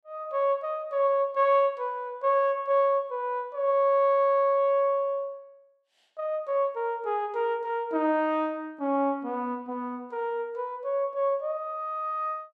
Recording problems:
none

